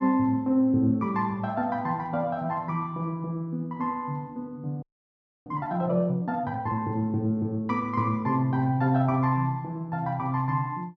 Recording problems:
audio freezing; at 5 s for 0.5 s

